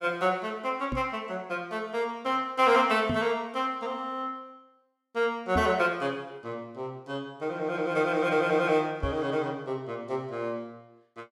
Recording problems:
knock on the microphone; 4 times, first at 1 s; peak +2 dB vs average level

